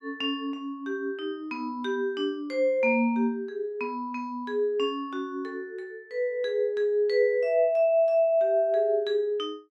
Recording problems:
none

